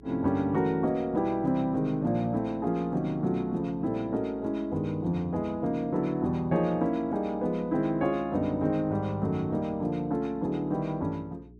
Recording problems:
hum; 60 Hz, harmonics up to 420 Hz, SNR 23 dB

